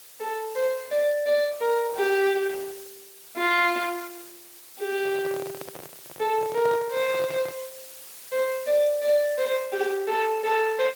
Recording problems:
codec artefacts; Opus, log-spectral distance 7 dB
hiss; slope +1 dB per octave, SNR 17 dB
handling noise; from 5 to 7.5 s; peak -6 dB vs average level

